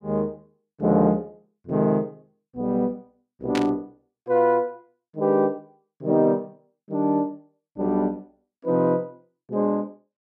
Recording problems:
burst of static; at 3.5 s; peak -2 dB vs average level

